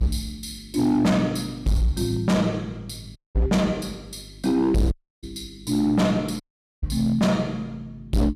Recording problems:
distorted audio; hard clipping, signal-to-distortion ratio 8 dB
electrical hum; 50 Hz, harmonics up to 400 Hz, SNR 23 dB
audio cutting out; at 3 s, at 5 s and at 6.5 s

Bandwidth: 15 kHz